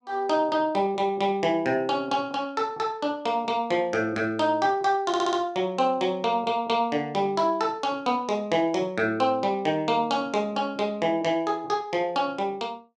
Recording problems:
stutter; at 5 s

